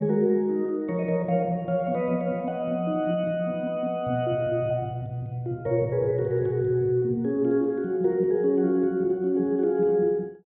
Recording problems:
low-pass filter; nothing above 4 kHz

